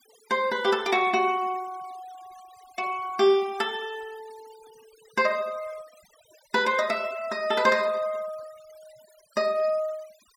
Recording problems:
denoising artefacts; signal-to-artefact ratio 22 dB

